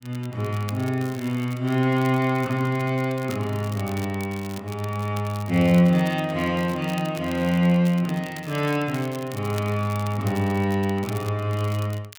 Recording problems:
crackling; vinyl, SNR 19 dB

